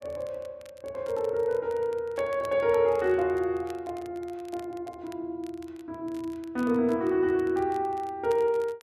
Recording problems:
crackle; vinyl, SNR 26 dB

